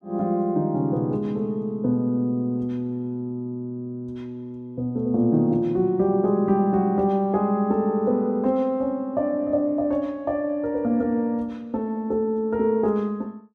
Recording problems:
none

